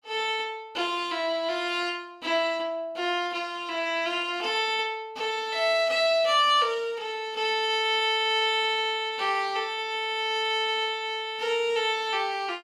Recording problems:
none

